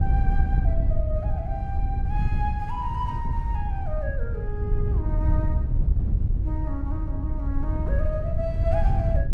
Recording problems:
wind on the microphone; below 92 Hz, SNR -8 dB

